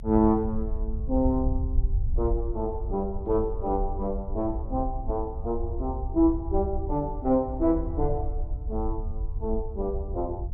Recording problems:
rumble; below 68 Hz, SNR 5 dB

